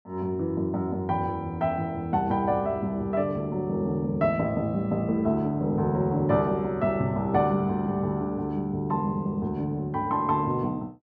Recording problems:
treble cut off; nothing above 8 kHz

